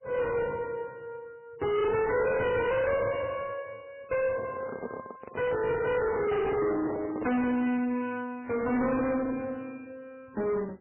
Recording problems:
lossy codec; MP3, log-spectral distance 3 dB, nothing above 2.9 kHz
distorted audio; soft clipping, signal-to-distortion ratio 6 dB
microphone handling noise; from 4 to 7.5 s; peak -4 dB vs average level

